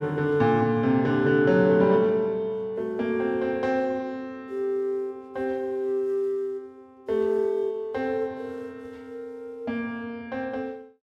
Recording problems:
none

